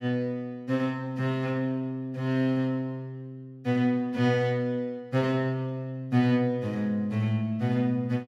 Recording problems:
none

